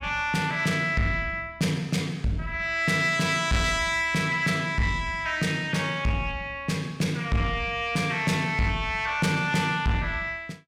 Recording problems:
distortion; soft clipping, signal-to-distortion ratio 11 dB

